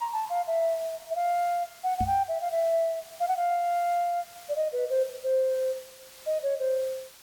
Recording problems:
hiss; slope +1 dB per octave, SNR 19 dB
knock on the microphone; at 2 s; peak -1 dB vs average level

